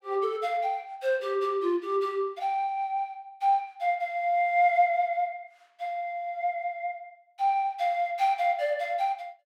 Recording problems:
none

